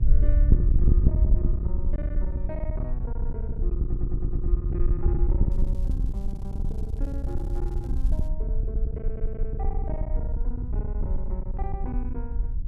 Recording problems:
hum; 50 Hz, harmonics up to 450 Hz, SNR 17 dB
wind on the microphone; below 64 Hz, SNR -12 dB
packet loss; 16% of the sound replaced, filled with silence
stutter; at 4 s and at 9 s
crackle; from 5.5 to 8.5 s; loose cable, SNR 21 dB

